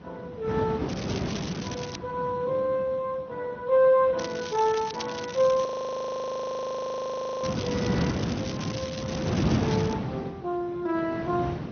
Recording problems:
treble missing; nothing above 6.2 kHz
lossy compression; Speex, log-spectral distance 6 dB
wind noise; below 410 Hz, SNR 2 dB
crackling; from 1 to 2 s and from 4 to 10 s; loose cable, SNR 11 dB
audio freezing; at 5.5 s for 2 s

